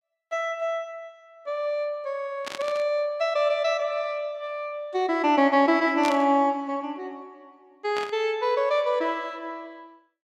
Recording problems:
burst of static; at 2.5 s, at 6 s and at 8 s; peak -3 dB vs average level

